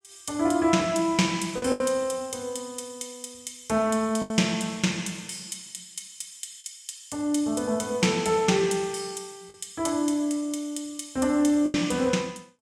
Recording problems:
packet loss; 3% of the sound replaced, filled with the last packet

